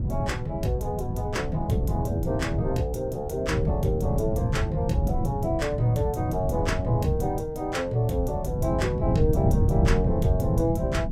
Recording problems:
wind noise; below 170 Hz, SNR 0 dB

